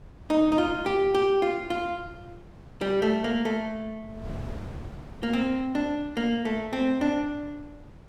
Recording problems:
wind noise; below 270 Hz, SNR 18 dB

